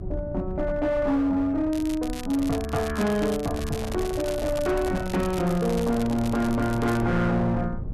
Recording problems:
distortion; hard clipping, signal-to-distortion ratio 11 dB
rumble; below 110 Hz, SNR 12 dB
crackling; from 1.5 to 7 s; loose cable, SNR 15 dB
microphone handling noise; from 3 to 6.5 s; peak -7 dB vs average level

